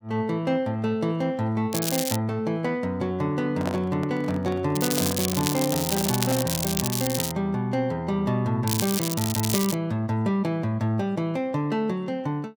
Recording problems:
crackle; at 1.5 s, from 5 to 7.5 s and from 8.5 to 9.5 s; loose cable, SNR 2 dB
microphone handling noise; from 3.5 to 6.5 s; peak -1 dB vs average level

